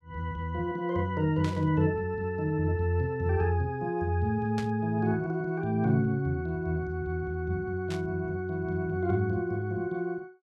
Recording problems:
static burst; at 1.5 s, at 4.5 s and at 8 s; peak -7 dB vs average level

